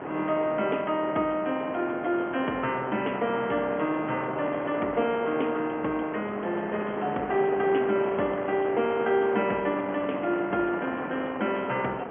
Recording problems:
telephone audio; 220 Hz to 3.2 kHz, G.711
wind on the microphone; below 1.1 kHz, SNR 7 dB

